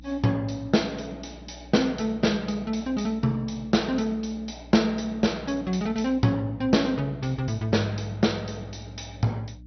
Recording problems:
codec artefacts; MP2, log-spectral distance 6 dB, nothing above 6 kHz
hum; 60 Hz, harmonics up to 300 Hz, SNR 20 dB

